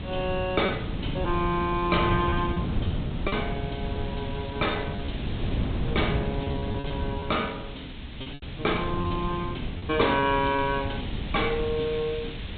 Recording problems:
treble missing; nothing above 4 kHz
background hiss; SNR 15 dB
wind noise; below 220 Hz, SNR 4 dB
packet loss; 5% of the sound replaced, filled with repeated pitch periods

